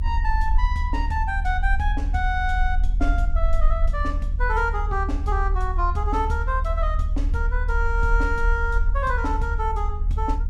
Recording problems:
hum; 50 Hz, harmonics up to 500 Hz, SNR 15 dB
low-frequency rumble; below 60 Hz, strongest tone 36 Hz, SNR -1 dB

